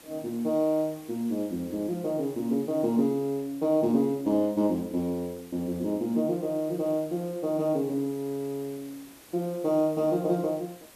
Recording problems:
hiss; slope -3 dB per octave, SNR 22 dB

